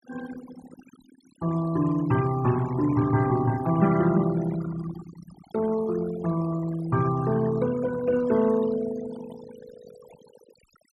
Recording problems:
denoising artefacts; signal-to-artefact ratio 16 dB

